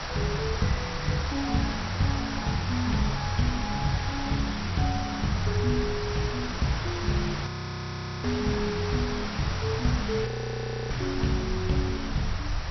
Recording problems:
lossy codec; MP2, log-spectral distance 15 dB, nothing above 5.8 kHz
hiss; SNR 5 dB
low-frequency rumble; below 80 Hz, SNR 11 dB
audio freezing; at 7.5 s for 1 s and at 10 s for 0.5 s

